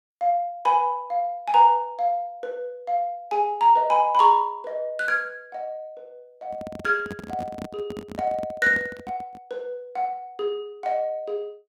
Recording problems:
handling noise; from 6.5 to 9.5 s; peak -7 dB vs average level

